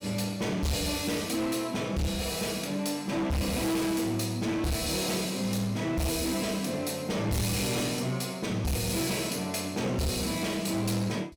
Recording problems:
distortion; hard clipping, signal-to-distortion ratio 8 dB

